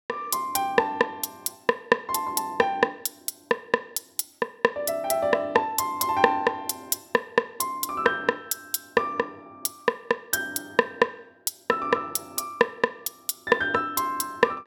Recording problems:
none

